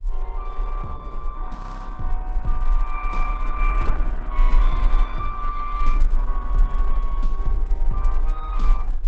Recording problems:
codec artefacts; Opus, log-spectral distance 2 dB, nothing above 7.6 kHz
low-frequency rumble; below 38 Hz, strongest tone 26 Hz, SNR -7 dB
frozen audio; at 1.5 s

